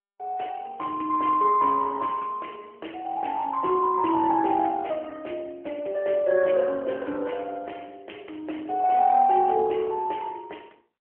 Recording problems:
phone line; 300 Hz to 3.1 kHz, AMR-NB

